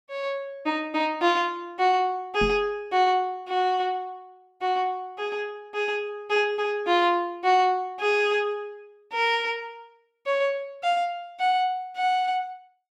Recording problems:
knock on the microphone; at 2.5 s; peak -2 dB vs average level

